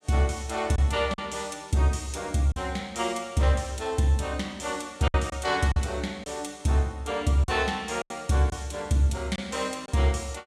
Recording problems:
packet loss; 4% of the sound replaced, filled with silence

